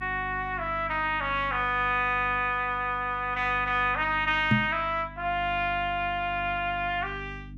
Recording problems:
electrical hum; 50 Hz, harmonics up to 300 Hz, SNR 16 dB
microphone thump; at 4.5 s; peak +6 dB vs average level

